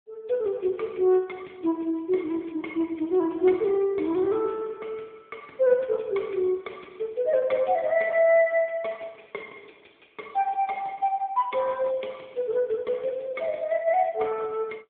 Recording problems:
phone line; 220 Hz to 3 kHz, AMR-NB

